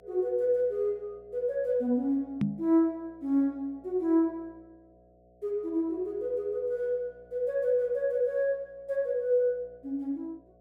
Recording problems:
hum; 60 Hz, harmonics up to 720 Hz, SNR 28 dB
microphone bump; at 2.5 s; peak +5 dB vs average level

